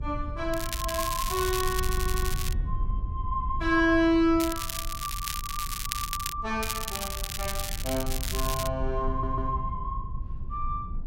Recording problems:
rumble; below 74 Hz, SNR 6 dB
crackle; from 0.5 to 2.5 s, from 4.5 to 6.5 s and from 6.5 to 8.5 s; loose cable, SNR 4 dB
stutter; at 2 s and at 9 s

